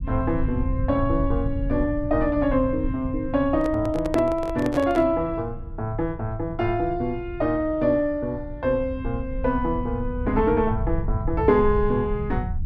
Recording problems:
rumble; below 100 Hz, SNR 8 dB
handling noise; from 3.5 to 5 s; peak +1 dB vs average level

